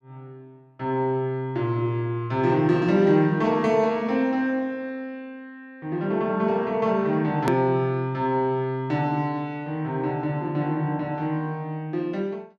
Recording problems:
edit click; at 7.5 s

